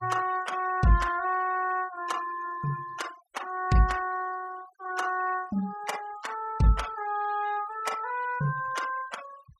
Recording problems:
noise reduction artefacts; signal-to-artefact ratio 17 dB

